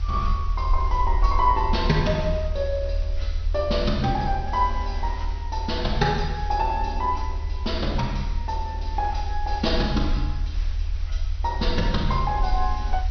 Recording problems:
treble cut off; nothing above 6 kHz
hiss; SNR 20 dB
low-frequency rumble; below 74 Hz, SNR 3 dB

